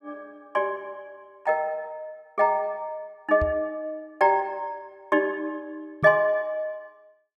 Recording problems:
knock on the microphone; at 3.5 s and at 6 s; peak -1 dB vs average level

